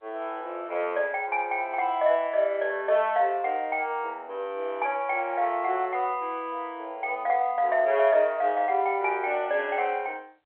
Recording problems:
telephone audio; 320 Hz to 3.4 kHz, G.711

